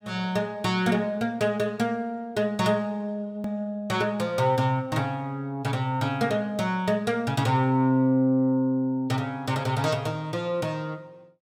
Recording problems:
hard cut with a click; at 3.5 s

